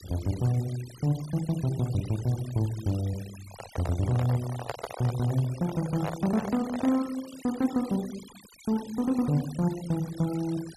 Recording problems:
noise reduction artefacts; signal-to-artefact ratio 17 dB
handling noise; from 3.5 to 7 s; peak 0 dB vs average level

